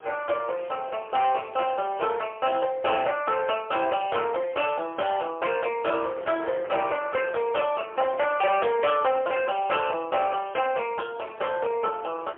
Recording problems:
phone line; 300 Hz to 3.3 kHz, AMR-NB, then MP3
distorted audio; hard clipping, signal-to-distortion ratio 11 dB
wind noise; below 1.5 kHz, SNR 20 dB

